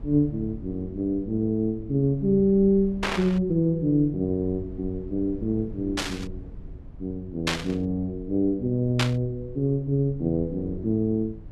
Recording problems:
rumble; below 100 Hz, SNR 17 dB
burst of static; 4 times, first at 3 s; peak +5 dB vs average level

